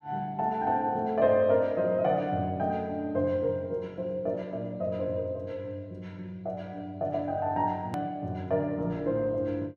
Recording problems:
hard cut with a click; at 8 s

